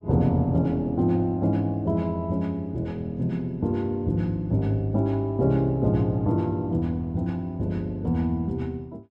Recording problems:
none

